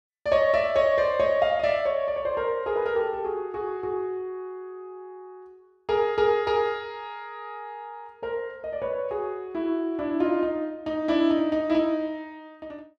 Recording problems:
none

